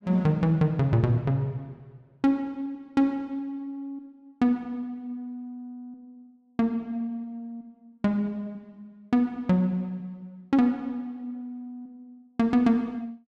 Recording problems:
none

